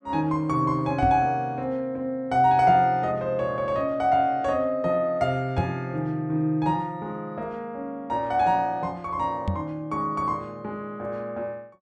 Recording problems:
knock on the microphone; at 1 s, at 5.5 s and at 9.5 s; peak +2 dB vs average level

